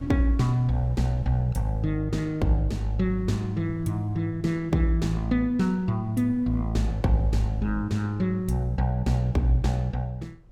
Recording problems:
wind noise; below 100 Hz, SNR 21 dB

